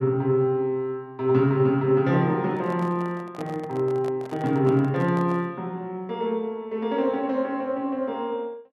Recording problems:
handling noise; from 2.5 to 5.5 s; peak -10 dB vs average level

